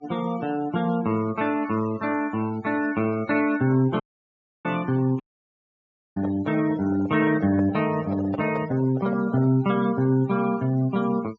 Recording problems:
low-pass filter; nothing above 7.3 kHz
noise reduction artefacts; signal-to-artefact ratio 20 dB
dropout; at 4 s for 0.5 s and at 5 s for 1 s
microphone handling noise; from 6 to 9.5 s; peak -5 dB vs average level

